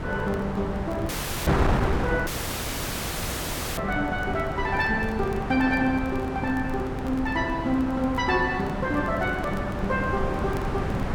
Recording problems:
wind noise; below 700 Hz, SNR 3 dB
crackle; vinyl, SNR 28 dB
dropout; at 1 s and at 2.5 s for 1.5 s

